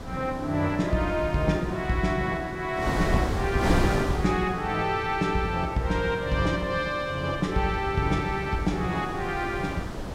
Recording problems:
wind on the microphone; below 690 Hz, SNR 7 dB

